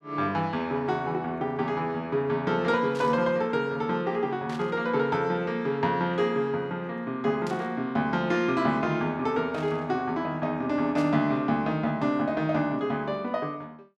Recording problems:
burst of static; 5 times, first at 3 s; peak -12 dB vs average level

